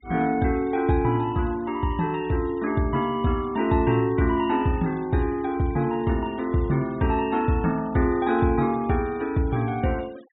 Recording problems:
low-pass filter; nothing above 3.8 kHz
denoising artefacts; signal-to-artefact ratio 26 dB

